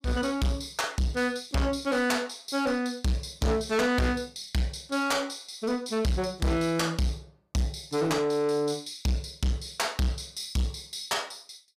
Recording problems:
distortion; soft clipping, signal-to-distortion ratio 7 dB

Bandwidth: 15 kHz